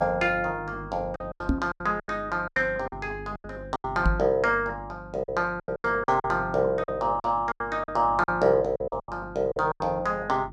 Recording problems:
hum; 50 Hz, harmonics up to 350 Hz, SNR 18 dB
lost packets; 13% of the sound replaced, filled with silence
microphone bump; at 1.5 s and at 4 s; peak +5 dB vs average level

